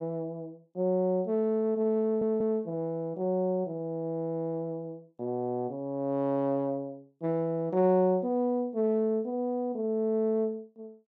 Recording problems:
stutter; at 2 s

